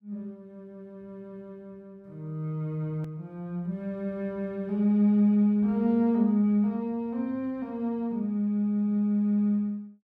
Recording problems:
edit click; at 3 s

